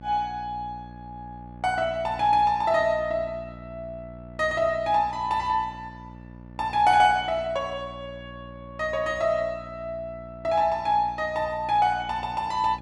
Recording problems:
hum; 60 Hz, harmonics up to 1.2 kHz, SNR 19 dB

